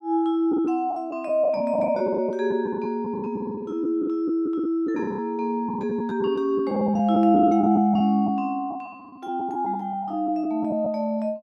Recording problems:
lost packets; 10% of the sound replaced, filled with the last packet

